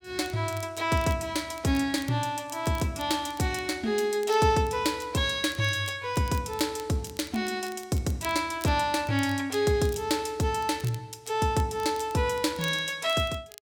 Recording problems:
crackling; vinyl, SNR 20 dB

